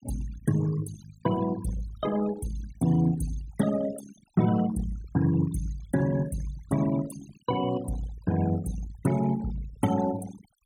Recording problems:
denoising artefacts; signal-to-artefact ratio 15 dB

